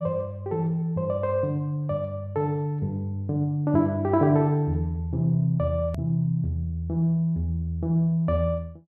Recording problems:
hard cut with a click; at 6 s

